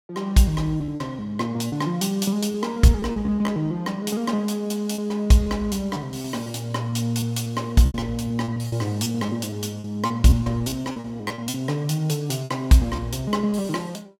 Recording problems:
packet loss; 10% of the sound replaced, filled with repeated pitch periods

